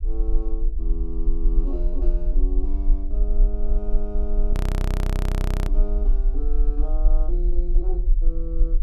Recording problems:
low-frequency rumble; below 40 Hz, SNR -11 dB
frozen audio; at 4.5 s for 1 s

